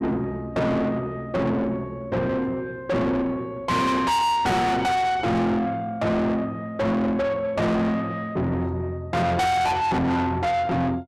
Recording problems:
distorted audio; soft clipping, signal-to-distortion ratio 6 dB

